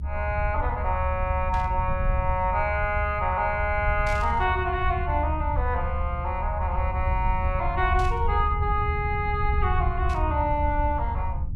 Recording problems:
low-frequency rumble; below 80 Hz, SNR 2 dB
burst of static; 4 times, first at 1.5 s; peak -10 dB vs average level

